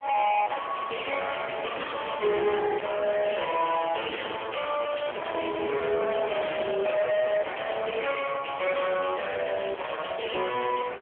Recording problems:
phone line; 300 Hz to 3.3 kHz, AMR-NB
distorted audio; soft clipping, signal-to-distortion ratio 6 dB
crackling; from 2 to 3.5 s; loose cable, SNR 30 dB

